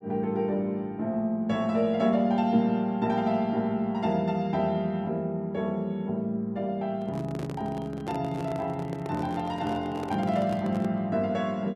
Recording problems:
handling noise; from 7 to 11 s; peak -5 dB vs average level

